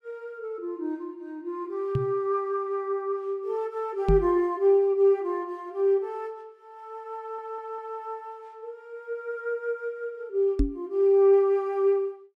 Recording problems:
microphone thump; at 2 s, at 4 s and at 11 s; peak +5 dB vs average level
stutter; at 7 s

